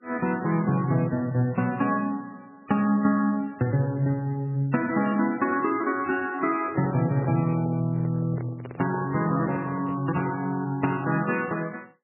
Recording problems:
lossy compression; MP3, log-spectral distance 3 dB, nothing above 2.7 kHz
handling noise; from 6.5 to 10 s; peak -8 dB vs average level

